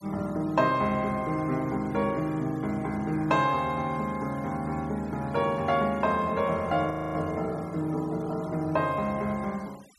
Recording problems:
noise reduction artefacts; signal-to-artefact ratio 24 dB
frozen audio; at 7 s

